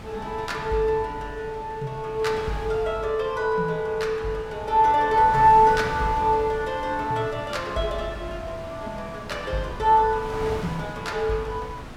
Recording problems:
wind noise; below 960 Hz, SNR 14 dB

